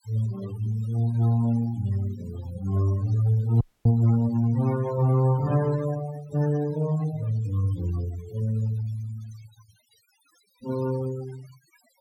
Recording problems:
noise reduction artefacts; signal-to-artefact ratio 18 dB
dropout; at 3.5 s

